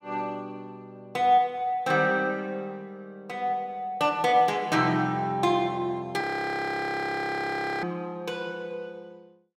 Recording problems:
frozen audio; at 6 s for 1.5 s

